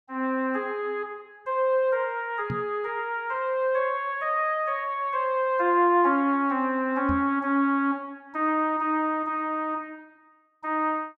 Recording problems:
knock on the microphone; at 2.5 s and at 7 s; peak -2 dB vs average level

